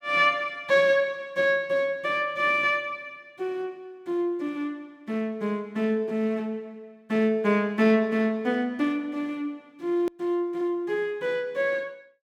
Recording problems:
edit click; at 10 s

